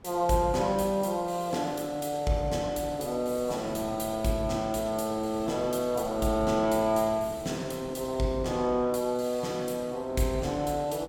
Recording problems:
wind on the microphone; below 530 Hz, SNR 20 dB

